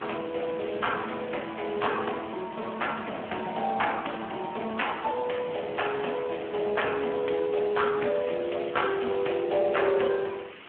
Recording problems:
telephone audio; 240 Hz to 3.2 kHz, Speex
hiss; SNR 16 dB
wind noise; below 450 Hz, SNR 19 dB

